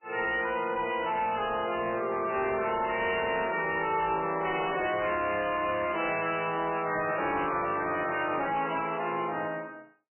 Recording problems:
lossy compression; MP3, log-spectral distance 6 dB, nothing above 3 kHz
distortion; soft clipping, signal-to-distortion ratio 11 dB

